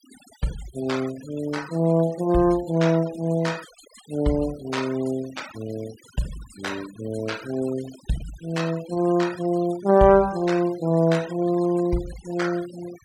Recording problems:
denoising artefacts; signal-to-artefact ratio 19 dB

